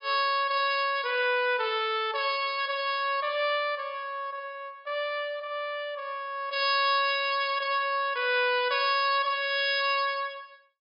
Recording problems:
low-pass filter; nothing above 5.5 kHz

